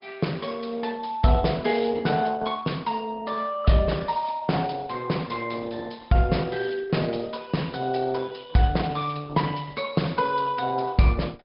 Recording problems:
treble missing; nothing above 5.2 kHz
codec artefacts; Opus, log-spectral distance 5 dB

